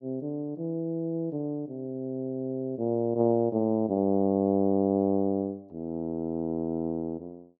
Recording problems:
none

